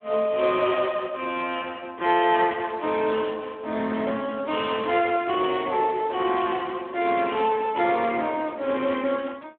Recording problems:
phone line; 280 Hz to 3.4 kHz, Speex

